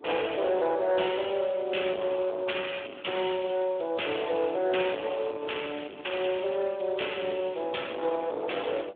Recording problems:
phone line; 260 Hz to 3.5 kHz, Speex
distorted audio; soft clipping, signal-to-distortion ratio 11 dB
wind noise; below 720 Hz, SNR 22 dB

